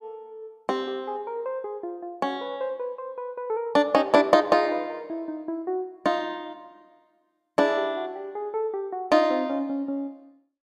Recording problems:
none

